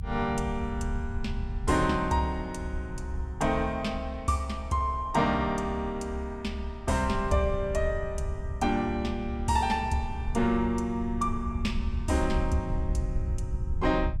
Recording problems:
rumble; below 78 Hz, SNR 6 dB

